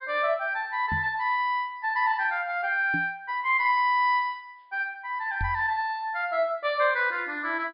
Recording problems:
treble cut off; nothing above 5 kHz
microphone bump; at 1 s, at 3 s and at 5.5 s; peak -3 dB vs average level

